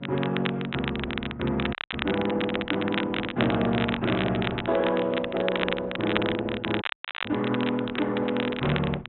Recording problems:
low-pass filter; nothing above 3.7 kHz
codec artefacts; Opus, log-spectral distance 3 dB
electrical hum; 60 Hz, harmonics up to 720 Hz, SNR 24 dB
crackle; vinyl, SNR 6 dB
audio cutting out; at 1.5 s and at 7 s

